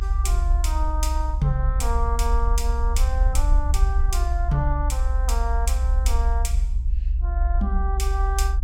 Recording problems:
rumble; below 62 Hz, strongest tone 38 Hz, SNR -6 dB

